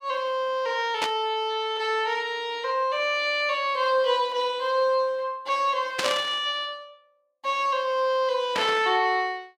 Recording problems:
static burst; at 1 s, at 6 s and at 8.5 s; peak +2 dB vs average level

